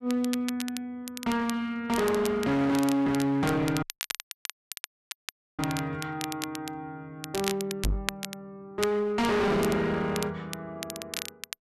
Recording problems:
distorted audio; hard clipping, uneven, signal-to-distortion ratio 5 dB
crackle; vinyl, SNR 10 dB
dropout; at 4 s for 2 s
knock on the microphone; at 8 s; peak +3 dB vs average level

